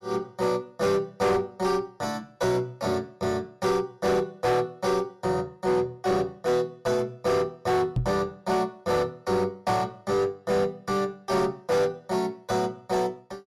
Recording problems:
distorted audio; hard clipping, uneven, signal-to-distortion ratio 12 dB
microphone thump; at 8 s; peak +3 dB vs average level

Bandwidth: 15.5 kHz